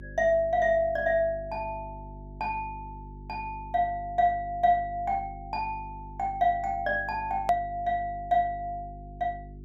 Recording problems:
hum; 50 Hz, harmonics up to 400 Hz, SNR 16 dB
click at an edit; at 7.5 s

